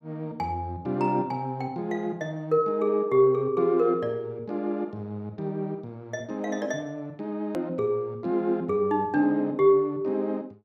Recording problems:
hard cut with a click; at 7.5 s

